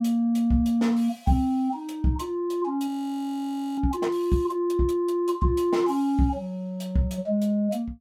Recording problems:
audio freezing; at 3 s for 1 s

